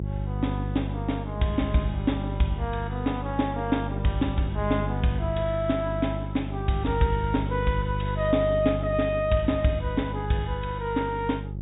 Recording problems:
treble cut off; nothing above 4 kHz
electrical hum; 50 Hz, harmonics up to 400 Hz, SNR 4 dB

